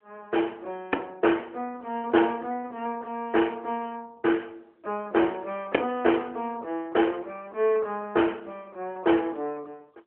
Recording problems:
phone line; 260 Hz to 3.2 kHz, AMR-NB

